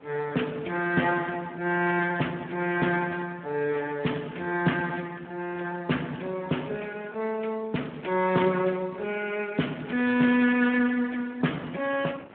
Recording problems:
telephone audio; 190 Hz to 3.4 kHz, Speex
wind noise; below 950 Hz, SNR 24 dB

